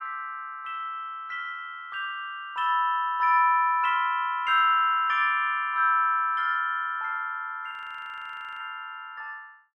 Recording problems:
audio freezing; at 7.5 s for 1 s

